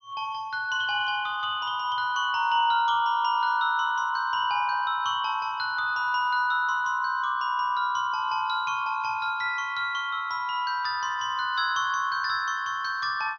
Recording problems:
treble missing; nothing above 6.4 kHz

